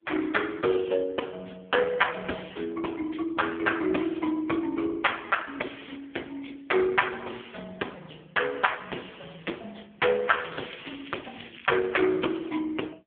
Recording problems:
telephone audio; 240 Hz to 3.4 kHz, AMR-NB
crackling; from 10 to 12 s; loose cable, SNR 16 dB

